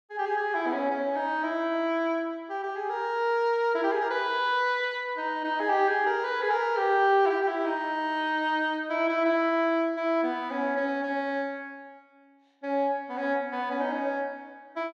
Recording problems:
none

